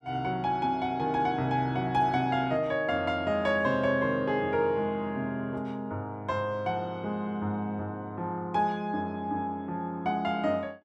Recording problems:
none

